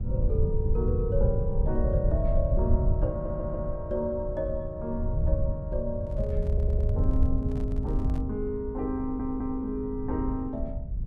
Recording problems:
rumble; below 92 Hz, SNR -2 dB
audio stuttering; at 3 s, at 6.5 s and at 9 s
handling noise; from 6 to 8 s; peak -12 dB vs average level

